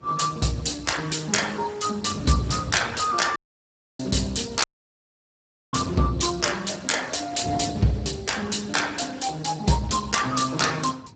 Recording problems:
codec artefacts; Speex, log-spectral distance 8 dB, nothing above 7.8 kHz
wind on the microphone; below 300 Hz, SNR 14 dB
dropout; at 3.5 s for 0.5 s and at 4.5 s for 1 s

